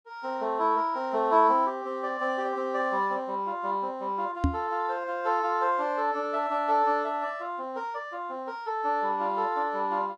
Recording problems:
microphone thump; at 4.5 s; peak +6 dB vs average level

